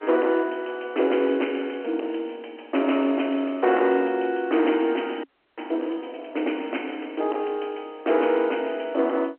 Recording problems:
telephone audio; 240 Hz to 3.1 kHz, G.711
distortion; hard clipping, uneven, signal-to-distortion ratio 11 dB
frozen audio; at 5 s

